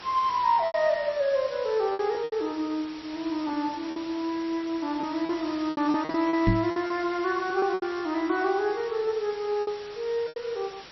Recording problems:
codec artefacts; MP3, log-spectral distance 16 dB
background hiss; slope -1 dB per octave, SNR 15 dB
lost packets; 9% of the sound replaced, filled with repeated pitch periods
knock on the microphone; at 6.5 s; peak +7 dB vs average level

